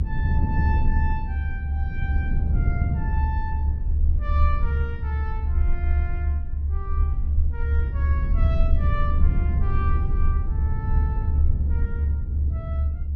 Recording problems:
low-frequency rumble; below 74 Hz, strongest tone 72 Hz, SNR -11 dB
wind on the microphone; below 120 Hz, SNR -7 dB

